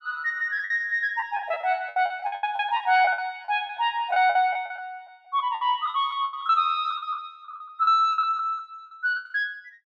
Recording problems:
packet loss; 16% of the sound replaced, filled with the last packet

